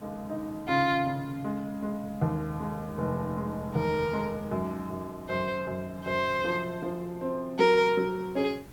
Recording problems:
hiss; slope -6 dB per octave, SNR 20 dB

